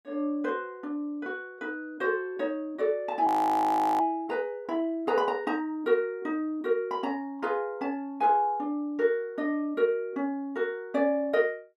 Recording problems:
frozen audio; at 3.5 s for 0.5 s

